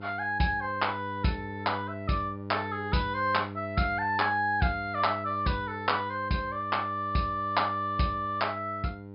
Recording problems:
low-pass filter; nothing above 5.5 kHz
mains hum; 50 Hz, harmonics up to 1 kHz, SNR 11 dB

